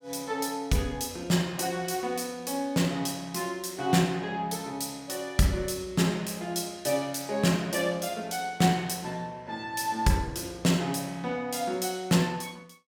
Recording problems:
none

